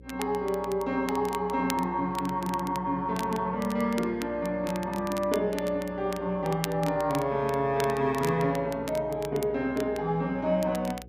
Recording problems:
hum; 60 Hz, harmonics up to 540 Hz, SNR 21 dB
crackling; vinyl, SNR 15 dB

